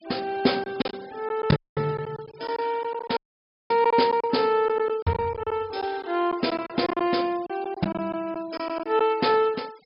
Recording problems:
low-pass filter; nothing above 5.5 kHz
denoising artefacts; signal-to-artefact ratio 23 dB
packet loss; 9% of the sound replaced, filled with silence
audio cutting out; at 1.5 s and at 3 s for 0.5 s

